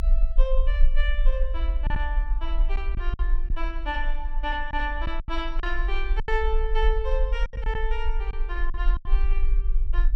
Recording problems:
rumble; below 42 Hz, strongest tone 20 Hz, SNR -4 dB
packet loss; 6% of the sound replaced, filled with silence

